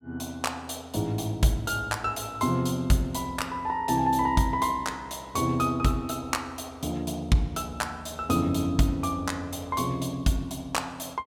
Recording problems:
none

